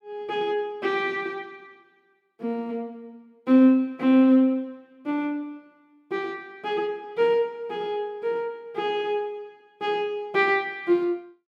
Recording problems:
none

